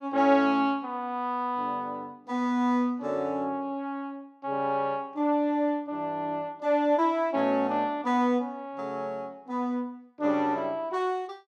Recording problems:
none

